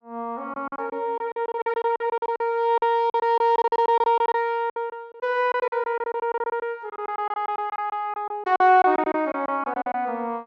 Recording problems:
packet loss; 17% of the sound replaced, filled with silence

